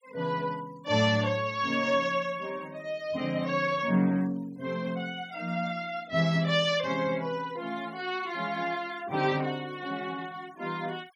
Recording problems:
noise reduction artefacts; signal-to-artefact ratio 25 dB

